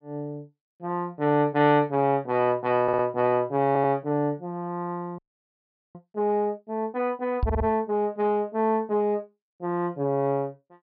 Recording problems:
low-pass filter; nothing above 5.5 kHz
stutter; at 3 s, at 3.5 s and at 7.5 s
audio freezing; at 5 s for 1 s
microphone bump; at 7.5 s; peak +2 dB vs average level

